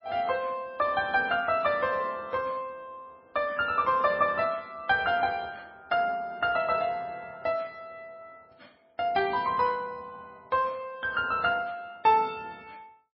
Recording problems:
codec artefacts; MP3, log-spectral distance 2 dB

